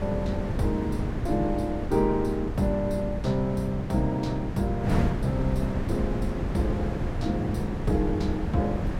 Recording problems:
mains hum; 50 Hz, harmonics up to 600 Hz, SNR 20 dB
wind on the microphone; below 260 Hz, SNR 2 dB

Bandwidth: 16 kHz